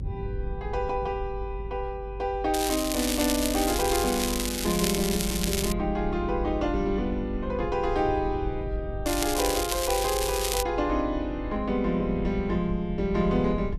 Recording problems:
low-frequency rumble; below 80 Hz, strongest tone 50 Hz, SNR 9 dB
crackling; from 2.5 to 4.5 s, from 4.5 to 5.5 s and from 9 to 11 s; loose cable, SNR 2 dB

